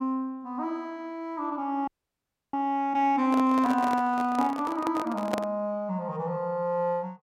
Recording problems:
audio freezing; at 2 s for 0.5 s
handling noise; from 3.5 to 5.5 s; peak +2 dB vs average level

